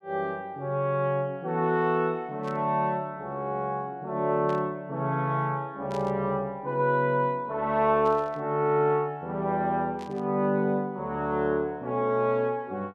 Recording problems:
static burst; 5 times, first at 2.5 s; peak -14 dB vs average level

